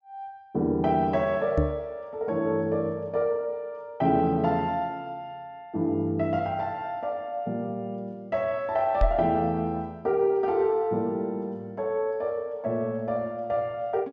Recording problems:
low-pass filter; nothing above 7.8 kHz
microphone thump; at 1.5 s and at 9 s; peak +6 dB vs average level

